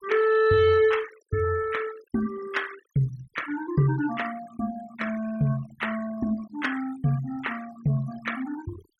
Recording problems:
noise reduction artefacts; signal-to-artefact ratio 17 dB

